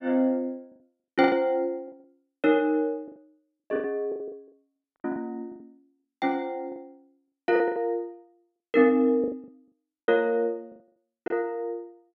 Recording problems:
packet loss; 13% of the sound replaced, filled with the last packet

